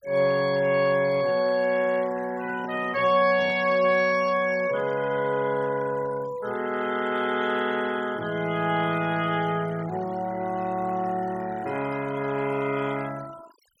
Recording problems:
denoising artefacts; signal-to-artefact ratio 19 dB
handling noise; from 2.5 to 4 s; peak -13 dB vs average level

